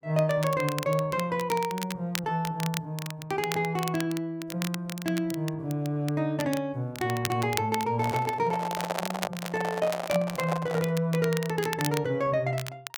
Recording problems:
crackling; vinyl, SNR 10 dB
handling noise; from 8 to 11 s; peak +3 dB vs average level

